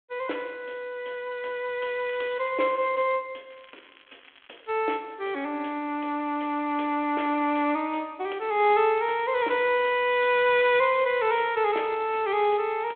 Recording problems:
phone line; 240 Hz to 3.4 kHz, G.726
crackling; from 2 to 3 s and from 3.5 to 4.5 s; loose cable, SNR 27 dB

